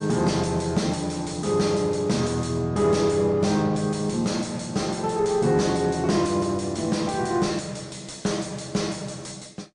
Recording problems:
lossy compression; MP3, log-spectral distance 5 dB, nothing above 9 kHz
distortion; soft clipping, signal-to-distortion ratio 11 dB

